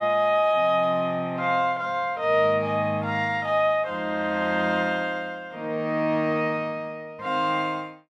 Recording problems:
none

